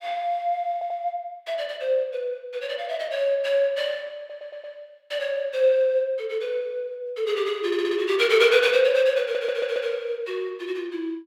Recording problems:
stutter; 4 times, first at 0.5 s

